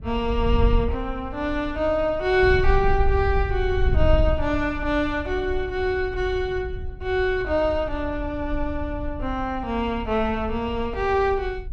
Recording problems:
wind on the microphone; below 70 Hz, SNR 6 dB

